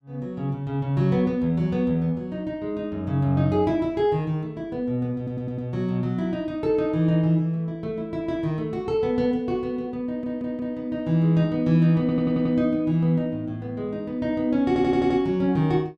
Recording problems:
stutter; 4 times, first at 5 s

